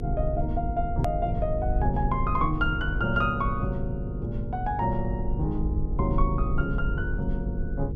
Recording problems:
electrical hum; 50 Hz, harmonics up to 500 Hz, SNR 6 dB
rumble; below 66 Hz, SNR 4 dB
edit click; at 1 s

